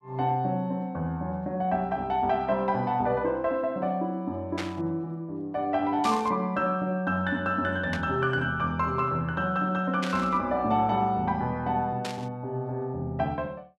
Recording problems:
static burst; 5 times, first at 4.5 s; peak -2 dB vs average level

